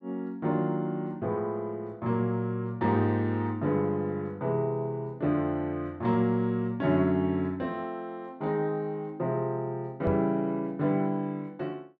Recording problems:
microphone bump; at 10 s; peak 0 dB vs average level

